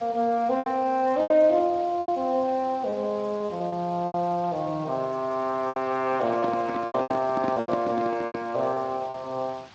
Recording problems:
lossy codec; Speex, log-spectral distance 3 dB
hiss; SNR 22 dB
packet loss; 10% of the sound replaced, filled with repeated pitch periods
microphone handling noise; from 6 to 8.5 s; peak +1 dB vs average level

